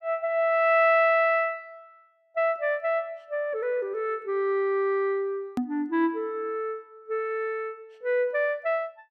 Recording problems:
edit click; at 5.5 s

